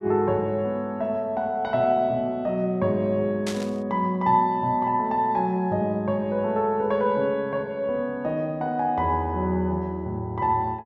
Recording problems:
burst of static; at 3.5 s; peak -4 dB vs average level

